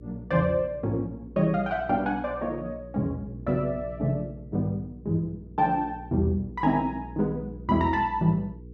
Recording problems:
hum; 60 Hz, harmonics up to 480 Hz, SNR 16 dB

